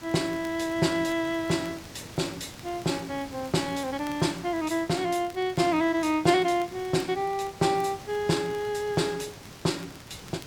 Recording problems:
background hiss; slope -3 dB per octave, SNR 16 dB
crackle; vinyl, SNR 26 dB

